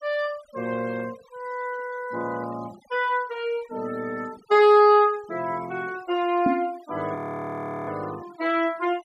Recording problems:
noise reduction artefacts; signal-to-artefact ratio 23 dB
microphone bump; at 6.5 s; peak +4 dB vs average level
frozen audio; at 7 s for 0.5 s

